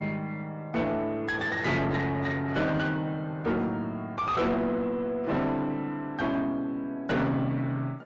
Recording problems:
lossy codec; AAC, log-spectral distance 2 dB, nothing above 7.3 kHz
distortion; soft clipping, signal-to-distortion ratio 7 dB

